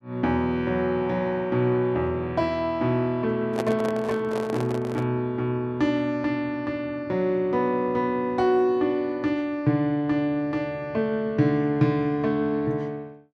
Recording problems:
microphone handling noise; from 3.5 to 5 s; peak 0 dB vs average level

